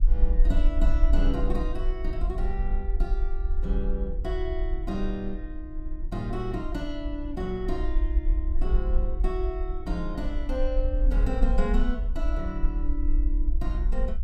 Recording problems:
rumble; below 46 Hz, SNR -4 dB
wind noise; below 100 Hz, SNR 10 dB

